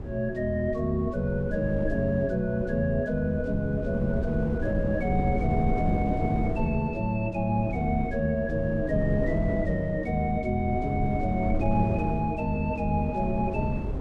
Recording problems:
wind noise; below 250 Hz, SNR 6 dB

